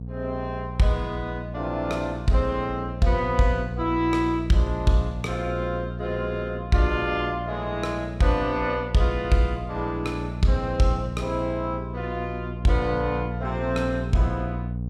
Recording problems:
hum; 60 Hz, harmonics up to 480 Hz, SNR 7 dB

